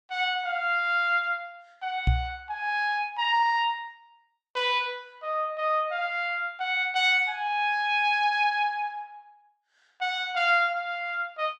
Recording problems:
microphone thump; at 2 s; peak +6 dB vs average level

